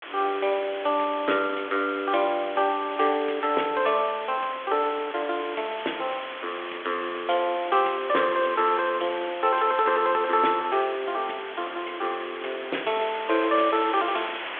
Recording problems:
telephone audio; 260 Hz to 3.4 kHz, G.726
hiss; SNR 11 dB

